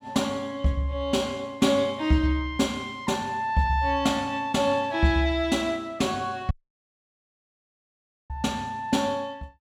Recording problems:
dropout; at 6.5 s for 2 s

